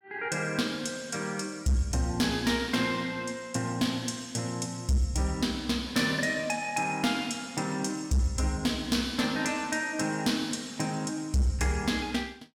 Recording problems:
distorted audio; hard clipping, signal-to-distortion ratio 12 dB

